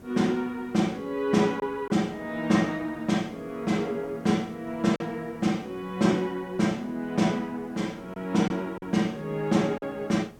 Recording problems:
background hiss; SNR 22 dB
packet loss; 1.9% of the sound replaced, filled with silence

